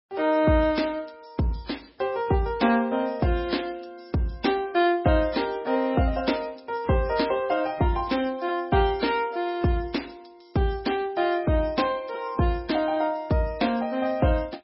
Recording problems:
codec artefacts; MP3, log-spectral distance 5 dB, nothing above 5.5 kHz

